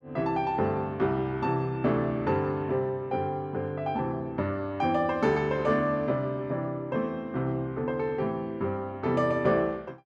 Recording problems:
none

